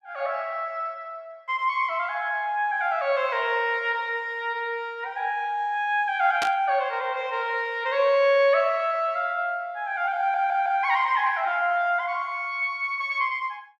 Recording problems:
burst of static; at 6.5 s; peak 0 dB vs average level
stutter; at 10 s

